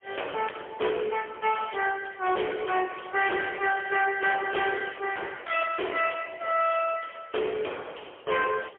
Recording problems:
telephone audio; 320 Hz to 3.3 kHz, AMR-NB, then MP3
distorted audio; hard clipping, uneven, signal-to-distortion ratio 10 dB

